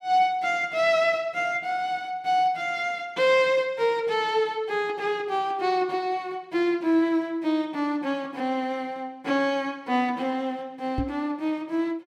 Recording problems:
microphone thump; at 11 s; peak +2 dB vs average level

